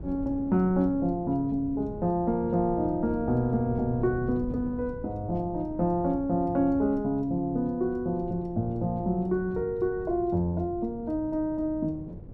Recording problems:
wind on the microphone; below 230 Hz, SNR 13 dB

